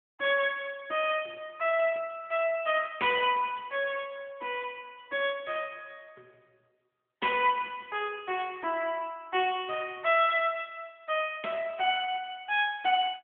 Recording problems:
phone line; 280 Hz to 3.4 kHz, AMR-NB

